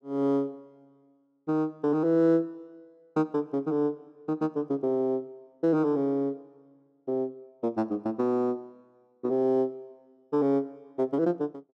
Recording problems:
none

